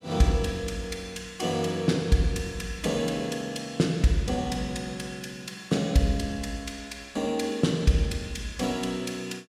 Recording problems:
none

